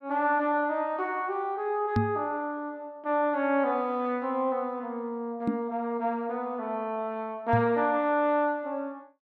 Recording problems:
knock on the microphone; at 2 s, at 5.5 s and at 7.5 s; peak +6 dB vs average level

